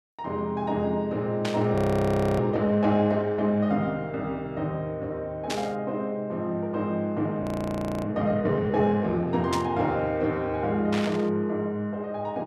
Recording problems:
static burst; 4 times, first at 1.5 s; peak -1 dB vs average level
frozen audio; at 2 s for 0.5 s and at 7.5 s for 0.5 s

